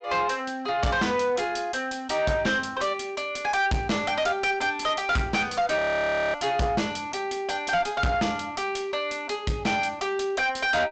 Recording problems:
treble missing; nothing above 8 kHz
distortion; soft clipping, signal-to-distortion ratio 7 dB
audio freezing; at 6 s for 0.5 s

